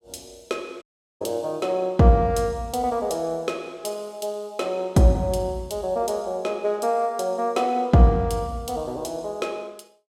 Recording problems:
dropout; at 1 s

